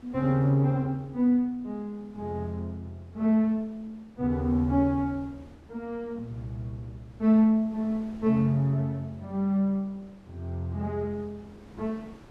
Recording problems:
wind noise; below 570 Hz, SNR 25 dB

